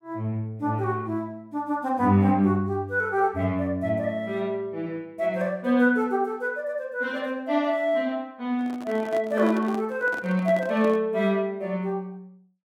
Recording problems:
microphone handling noise; from 8.5 to 11 s; peak -7 dB vs average level

